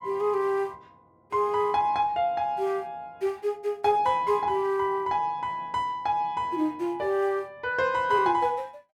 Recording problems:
none

